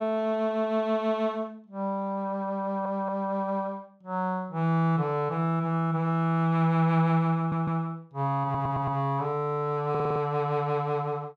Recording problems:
audio stuttering; 4 times, first at 2.5 s

